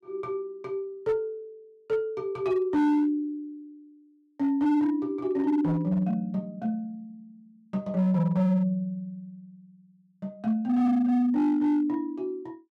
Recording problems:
distortion; hard clipping, signal-to-distortion ratio 11 dB

